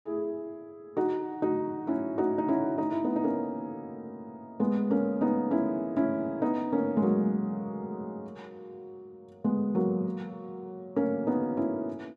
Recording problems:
none

